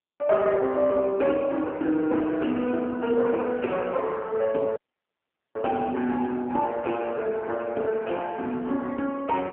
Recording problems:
phone line; 220 Hz to 2.6 kHz, AMR-NB
dropout; at 5 s for 1 s

